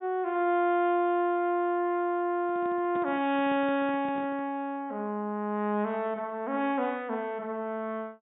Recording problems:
low-pass filter; nothing above 4 kHz
handling noise; from 2.5 to 4.5 s; peak -9 dB vs average level

